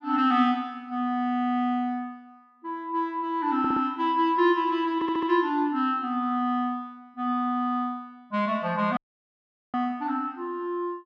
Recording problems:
stutter; at 3.5 s and at 5 s
audio cutting out; at 9 s for 1 s

